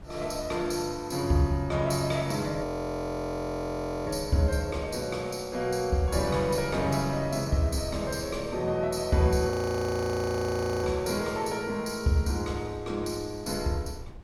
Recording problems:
wind noise; below 160 Hz, SNR 18 dB
frozen audio; at 2.5 s for 1.5 s and at 9.5 s for 1.5 s

